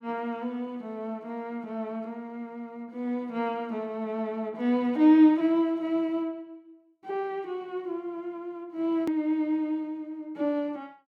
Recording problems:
hard cut with a click; at 9 s

